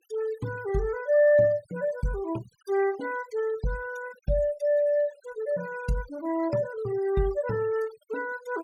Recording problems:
noise reduction artefacts; signal-to-artefact ratio 20 dB

